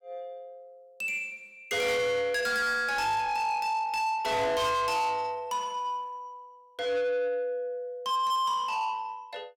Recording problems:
distortion; soft clipping, signal-to-distortion ratio 8 dB

